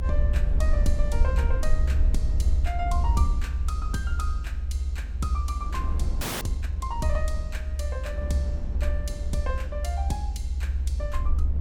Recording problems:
low-frequency rumble; below 70 Hz, SNR -8 dB
wind noise; below 340 Hz, SNR 11 dB
frozen audio; at 6 s

